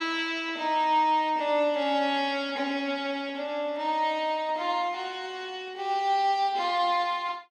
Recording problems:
none

